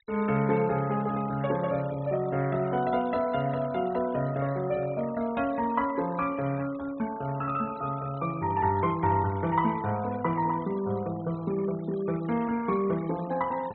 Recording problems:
low-pass filter; nothing above 4 kHz
noise reduction artefacts; signal-to-artefact ratio 21 dB

